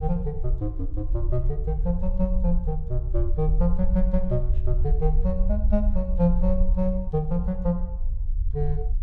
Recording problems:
low-frequency rumble; below 52 Hz, SNR 0 dB

